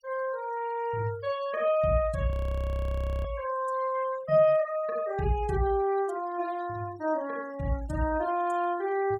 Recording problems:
denoising artefacts; signal-to-artefact ratio 22 dB
frozen audio; at 2.5 s for 1 s

